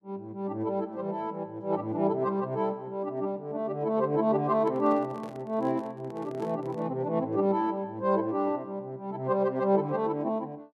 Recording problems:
handling noise; from 4.5 to 7 s; peak -11 dB vs average level

